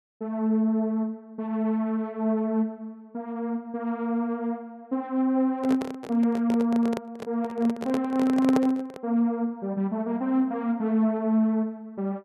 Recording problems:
microphone handling noise; from 5.5 to 9 s; peak +3 dB vs average level

